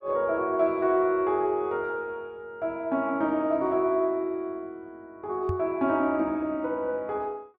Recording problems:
microphone bump; at 5.5 s; peak -1 dB vs average level

